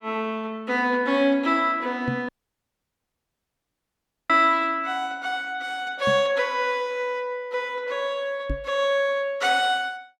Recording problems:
microphone bump; at 2 s, at 6 s and at 8.5 s; peak -1 dB vs average level
dropout; at 2.5 s for 2 s

